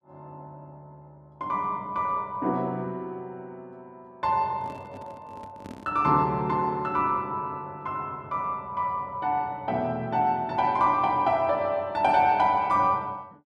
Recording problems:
handling noise; from 4.5 to 6 s; peak -11 dB vs average level

